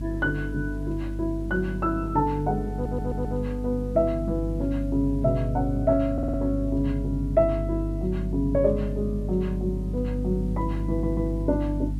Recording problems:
electrical hum; 50 Hz, harmonics up to 300 Hz, SNR 4 dB
background hiss; SNR 30 dB
stutter; at 2.5 s, at 6 s and at 11 s

